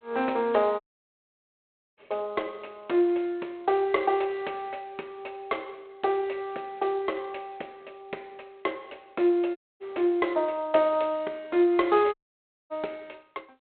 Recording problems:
telephone audio; 280 Hz to 3.3 kHz, G.726
dropout; at 1 s for 1 s, at 9.5 s and at 12 s for 0.5 s

